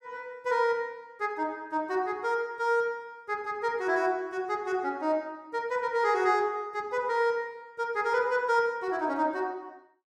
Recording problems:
none

